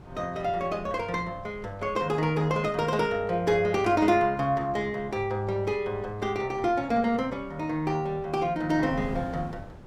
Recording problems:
wind noise; below 370 Hz, SNR 18 dB

